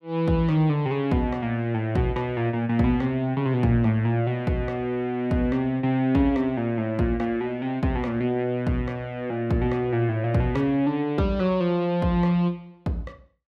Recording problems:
none

